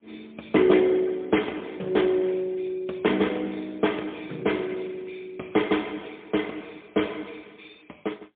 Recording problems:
phone line; 240 Hz to 3.5 kHz, AMR-NB, then MP3

